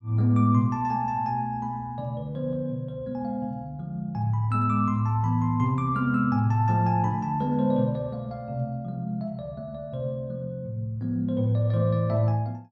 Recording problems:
none

